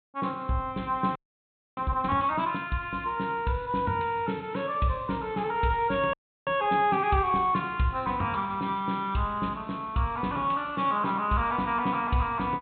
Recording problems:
treble cut off; nothing above 4 kHz
frozen audio; at 1 s for 0.5 s and at 6 s

